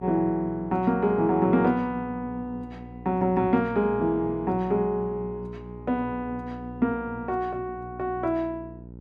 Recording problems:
hum; 60 Hz, harmonics up to 600 Hz, SNR 15 dB

